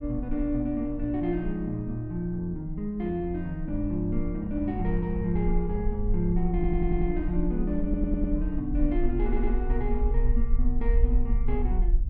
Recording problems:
low-frequency rumble; below 46 Hz, SNR 3 dB
wind on the microphone; below 74 Hz, SNR 10 dB
stutter; at 6.5 s, at 8 s and at 9 s

